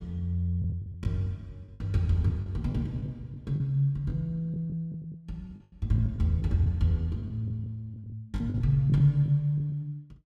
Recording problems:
lost packets; 10% of the sound replaced, filled with the last packet

